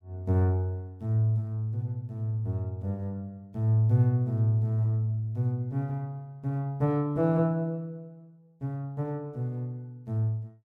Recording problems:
none

